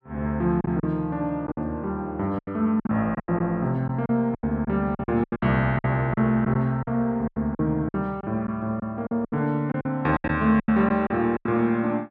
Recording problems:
packet loss; 13% of the sound replaced, filled with silence

